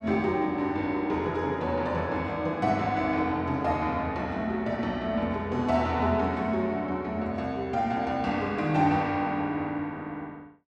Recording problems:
none

